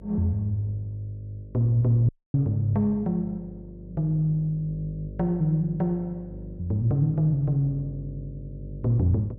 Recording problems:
hum; 50 Hz, harmonics up to 600 Hz, SNR 16 dB
dropout; at 2 s

